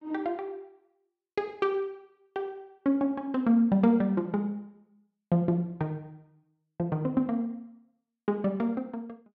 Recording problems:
none

